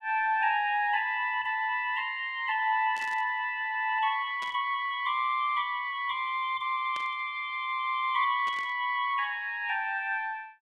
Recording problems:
static burst; 4 times, first at 3 s; peak -11 dB vs average level

